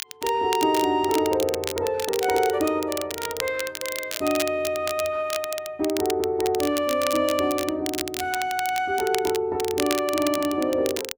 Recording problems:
crackle; vinyl, SNR 8 dB

